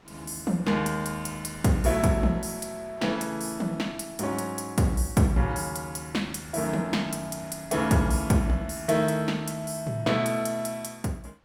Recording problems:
wind on the microphone; below 1.6 kHz, SNR 25 dB

